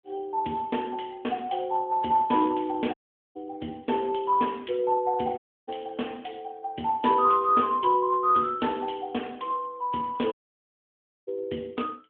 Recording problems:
telephone audio; 220 Hz to 3.3 kHz, AMR-NB
audio cutting out; at 3 s, at 5.5 s and at 10 s for 1 s

